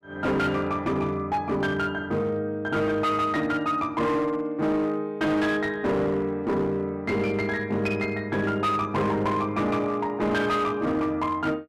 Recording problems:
distortion; hard clipping, signal-to-distortion ratio 11 dB

